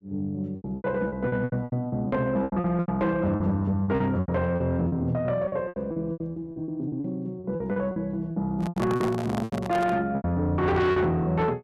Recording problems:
distorted audio; soft clipping, signal-to-distortion ratio 11 dB
lost packets; 17% of the sound replaced, filled with repeated pitch periods
handling noise; from 8.5 to 10 s; peak +1 dB vs average level

